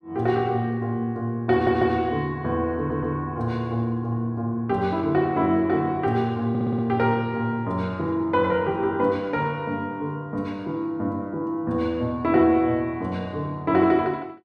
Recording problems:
stutter; at 1.5 s, at 3 s and at 6.5 s

